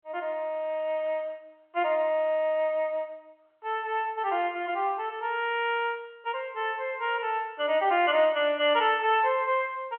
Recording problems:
telephone audio; 300 Hz to 3.2 kHz, G.711

